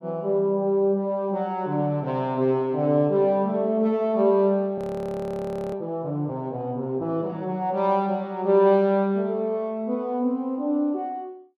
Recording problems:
frozen audio; at 5 s for 1 s

